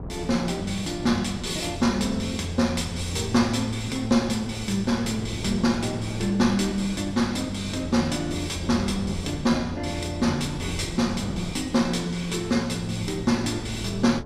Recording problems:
wind on the microphone; below 330 Hz, SNR 12 dB

